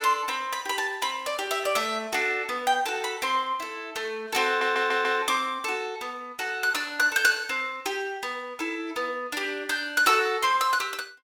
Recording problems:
stutter; at 4.5 s

